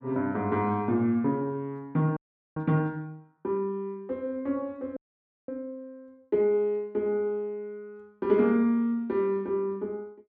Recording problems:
frozen audio; at 2 s and at 5 s for 0.5 s

